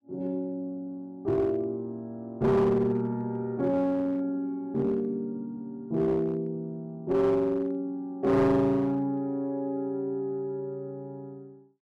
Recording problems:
distortion; hard clipping, uneven, signal-to-distortion ratio 10 dB

